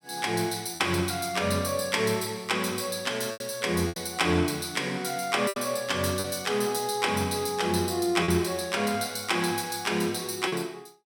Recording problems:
packet loss; 4% of the sound replaced, filled with repeated pitch periods

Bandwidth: 17.5 kHz